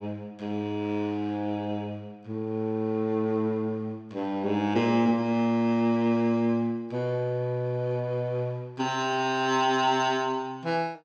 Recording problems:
none

